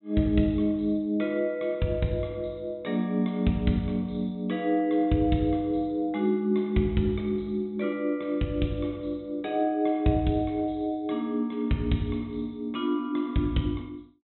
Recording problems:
low-pass filter; nothing above 4 kHz

